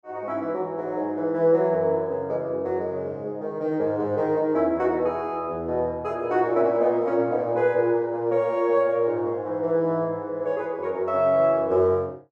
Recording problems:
none

